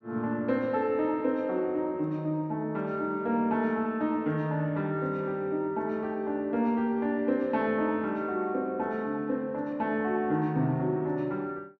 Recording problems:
none

